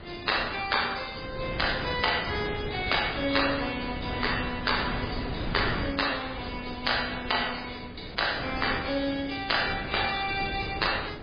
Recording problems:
codec artefacts; MP3, log-spectral distance 12 dB, nothing above 4.8 kHz
wind noise; below 640 Hz, SNR 9 dB

